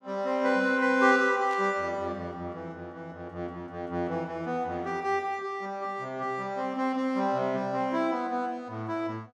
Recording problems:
static burst; at 1.5 s; peak -15 dB vs average level

